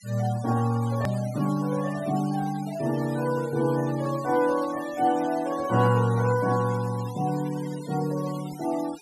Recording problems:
denoising artefacts; signal-to-artefact ratio 18 dB
click at an edit; at 1 s

